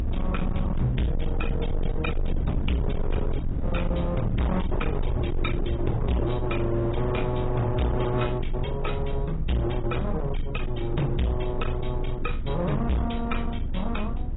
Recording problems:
lossy compression; AAC, log-spectral distance 3 dB, nothing above 3.8 kHz
distortion; hard clipping, uneven, signal-to-distortion ratio 6 dB
low-frequency rumble; below 110 Hz, strongest tone 24 Hz, SNR 2 dB

